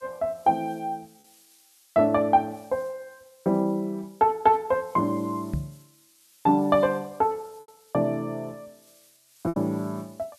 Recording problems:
background hiss; SNR 30 dB
packet loss; 1.9% of the sound replaced, filled with repeated pitch periods
knock on the microphone; at 5.5 s; peak 0 dB vs average level

